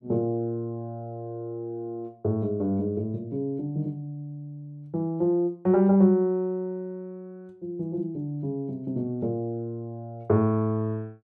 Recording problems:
none

